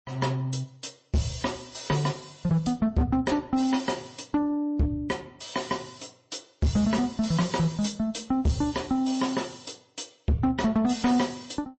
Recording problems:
lossy codec; MP3, then MP3, log-spectral distance 5 dB, nothing above 8 kHz
distortion; hard clipping, signal-to-distortion ratio 7 dB

